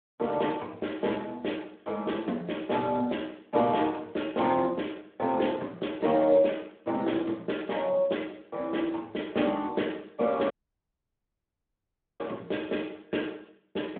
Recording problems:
phone line; 260 Hz to 3.4 kHz, Speex
audio cutting out; at 11 s for 1.5 s

